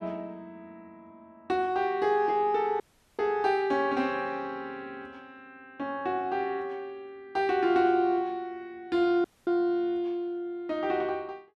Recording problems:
dropout; at 3 s and at 9 s

